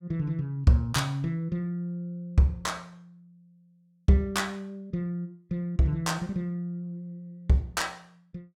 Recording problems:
none

